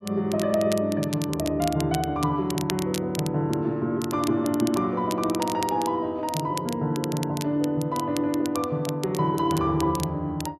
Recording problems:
crackling; vinyl, SNR 13 dB

